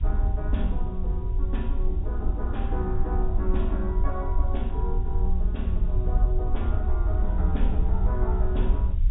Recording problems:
low-pass filter; nothing above 4 kHz
hiss; SNR 28 dB
rumble; below 62 Hz, SNR -7 dB
wind noise; below 200 Hz, SNR 11 dB

